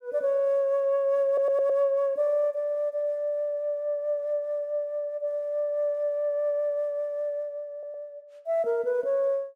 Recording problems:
audio stuttering; at 1.5 s and at 7.5 s

